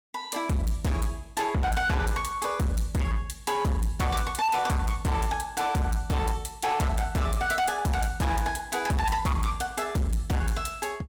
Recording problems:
distorted audio; hard clipping, signal-to-distortion ratio 8 dB

